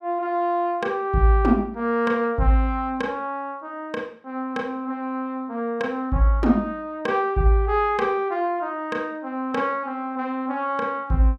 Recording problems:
none

